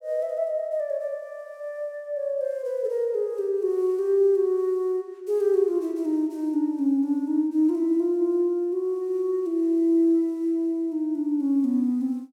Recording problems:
none

